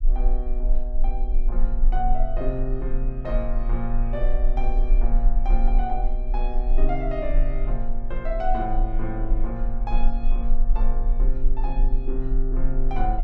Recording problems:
low-frequency rumble; below 34 Hz, strongest tone 20 Hz, SNR -5 dB

